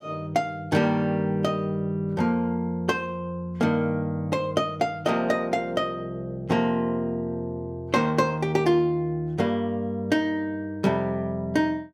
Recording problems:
none

